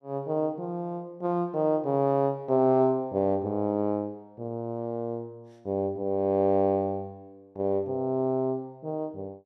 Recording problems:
none

